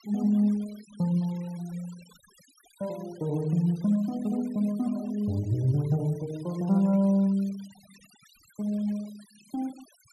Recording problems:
denoising artefacts; signal-to-artefact ratio 25 dB

